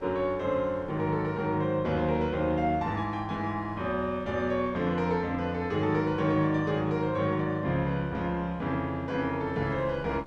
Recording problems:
wind on the microphone; below 660 Hz, SNR 22 dB

